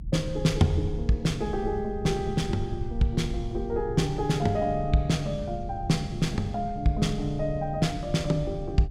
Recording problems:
low-frequency rumble; below 84 Hz, SNR 10 dB

